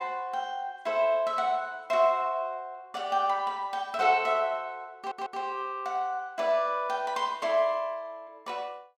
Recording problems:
stutter; at 5 s

